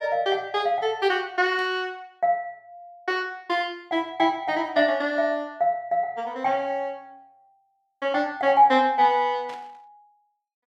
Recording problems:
burst of static; at 1.5 s and at 9.5 s; peak -16 dB vs average level

